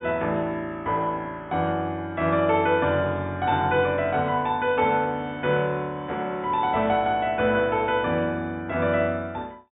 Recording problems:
low-pass filter; nothing above 4 kHz

